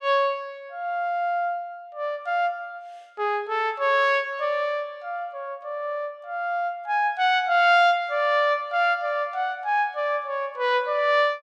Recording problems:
none

